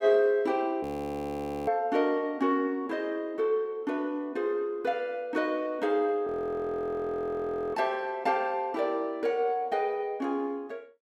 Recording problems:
frozen audio; at 1 s for 1 s and at 6.5 s for 1.5 s

